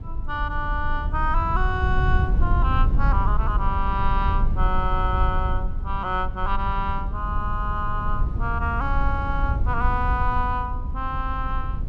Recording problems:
low-frequency rumble; below 76 Hz, SNR -1 dB

